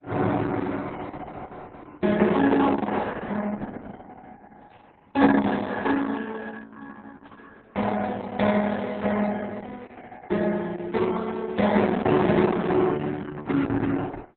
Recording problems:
codec artefacts; MP3, then Opus, log-spectral distance 4 dB, nothing above 3.9 kHz

